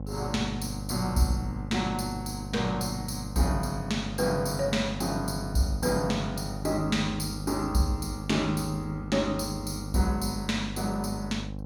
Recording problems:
electrical hum; 50 Hz, harmonics up to 850 Hz, SNR 8 dB

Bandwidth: 17.5 kHz